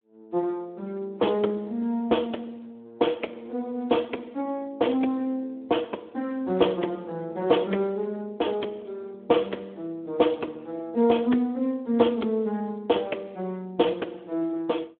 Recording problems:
telephone audio; 220 Hz to 3.5 kHz, Speex

